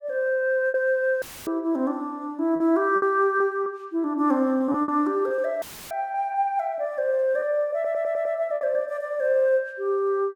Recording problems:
lost packets; 6% of the sound replaced, filled with repeated pitch periods
dropout; at 1 s and at 5.5 s; filled with static
stutter; at 7.5 s

